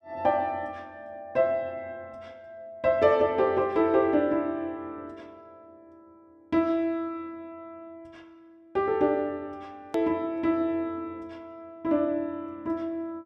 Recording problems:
edit click; at 10 s

